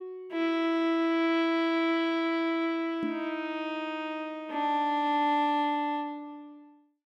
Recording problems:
knock on the microphone; at 3 s; peak -1 dB vs average level

